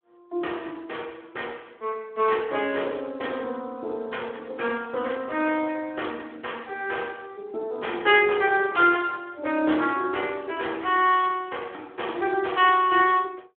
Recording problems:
phone line; 300 Hz to 3.5 kHz, Speex

